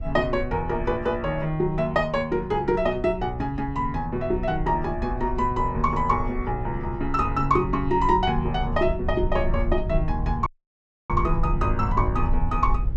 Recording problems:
low-frequency rumble; below 72 Hz, SNR 7 dB
dropout; at 10 s for 0.5 s

